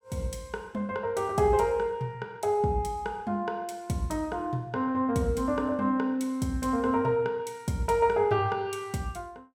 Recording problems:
none

